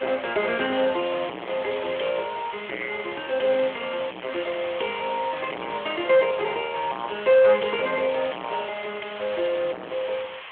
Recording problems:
phone line; 300 Hz to 3.7 kHz, Speex
distorted audio; hard clipping, signal-to-distortion ratio 8 dB
hiss; SNR 12 dB

